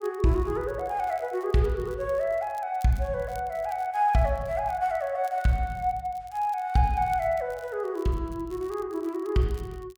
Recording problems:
crackling; vinyl, SNR 28 dB

